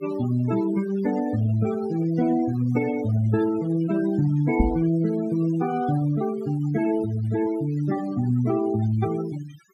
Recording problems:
noise reduction artefacts; signal-to-artefact ratio 15 dB
microphone thump; at 4.5 s; peak +5 dB vs average level

